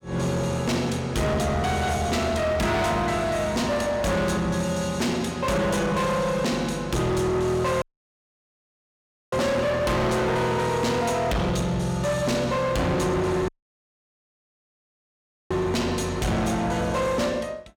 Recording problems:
distorted audio; hard clipping, signal-to-distortion ratio 7 dB
dropout; at 8 s for 1.5 s and at 13 s for 2 s

